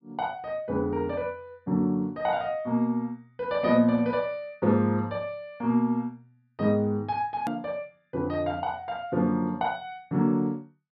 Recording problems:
treble missing; nothing above 5.5 kHz
click at an edit; at 7.5 s

